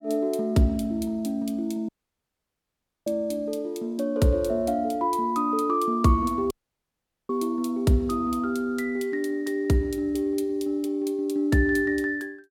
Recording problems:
dropout; at 2 s for 1 s and at 6.5 s for 1 s

